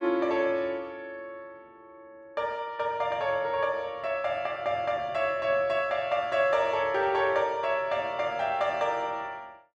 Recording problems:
none

